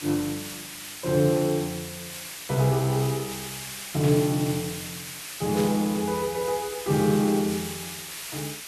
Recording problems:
background hiss; slope +2 dB per octave, SNR 9 dB
burst of static; at 4 s and at 5.5 s; peak -9 dB vs average level

